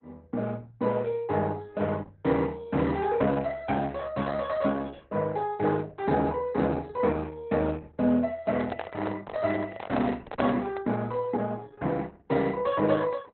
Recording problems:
lossy compression; Opus, log-spectral distance 3 dB, nothing above 4 kHz
handling noise; from 8.5 to 11 s; peak 0 dB vs average level

